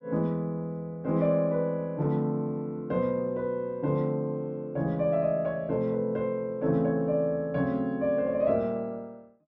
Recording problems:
none

